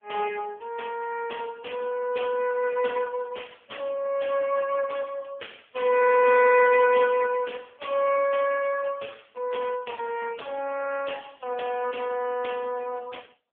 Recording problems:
telephone audio; 340 Hz to 2.8 kHz, AMR-NB

